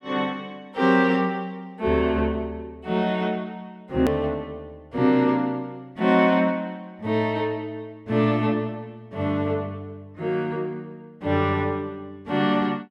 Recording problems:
edit click; at 4 s

